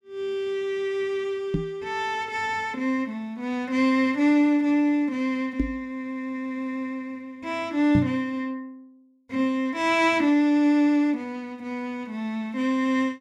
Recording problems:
knock on the microphone; at 1.5 s, at 5.5 s and at 8 s; peak +5 dB vs average level

